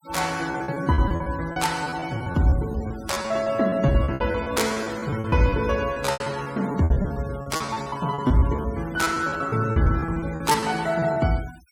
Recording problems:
denoising artefacts; signal-to-artefact ratio 18 dB
lost packets; 17% of the sound replaced, filled with repeated pitch periods

